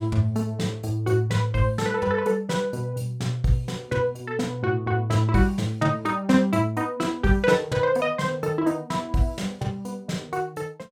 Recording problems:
none

